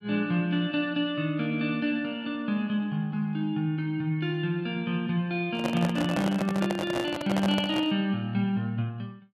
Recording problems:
microphone handling noise; from 5.5 to 8 s; peak +1 dB vs average level

